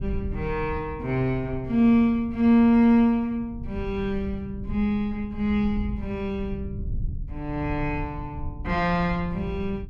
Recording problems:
rumble; below 100 Hz, SNR 12 dB

